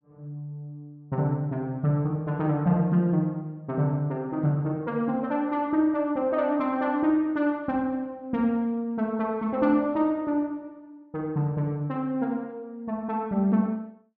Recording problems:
none

